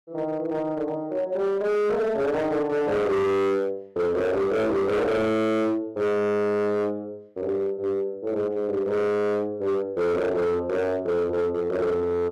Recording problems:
distortion; hard clipping, signal-to-distortion ratio 7 dB

